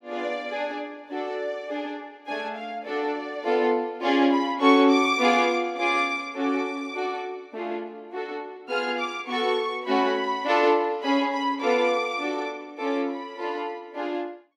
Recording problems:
none

